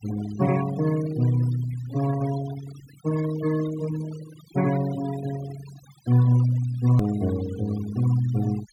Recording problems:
noise reduction artefacts; signal-to-artefact ratio 15 dB
edit click; at 7 s

